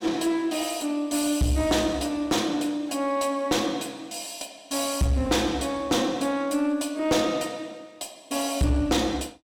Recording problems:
distortion; soft clipping, signal-to-distortion ratio 10 dB

